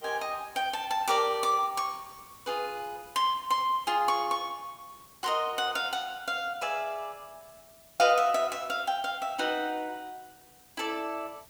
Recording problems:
hiss; slope -2 dB per octave, SNR 24 dB

